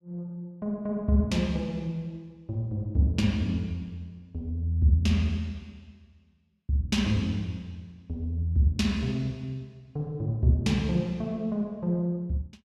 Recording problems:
none

